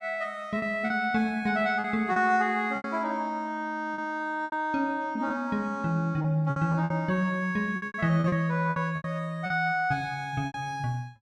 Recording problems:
lost packets; 9% of the sound replaced, filled with repeated pitch periods

